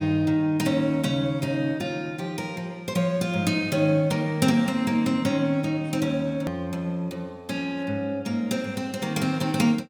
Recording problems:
edit click; at 6.5 s

